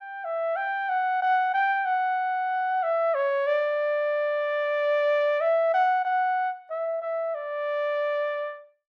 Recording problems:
none

